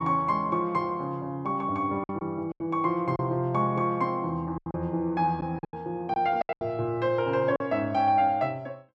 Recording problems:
lost packets; 7% of the sound replaced, filled with silence

